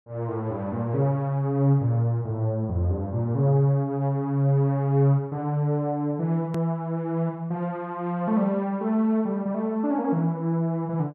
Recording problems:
hard cut with a click; at 6.5 s

